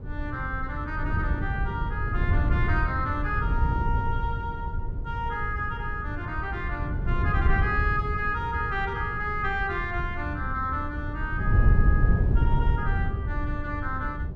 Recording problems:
wind noise; below 110 Hz, SNR -2 dB

